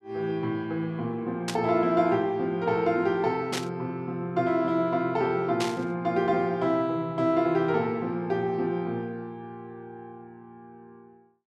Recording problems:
burst of static; at 1.5 s, at 3.5 s and at 5.5 s; peak 0 dB vs average level

